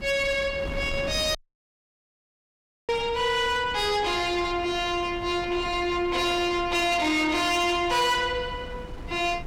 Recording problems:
distortion; soft clipping, signal-to-distortion ratio 10 dB
wind on the microphone; below 420 Hz, SNR 15 dB
dropout; at 1.5 s for 1.5 s

